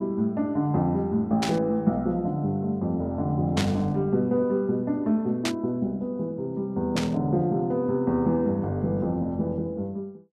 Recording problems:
burst of static; 4 times, first at 1.5 s; peak +1 dB vs average level

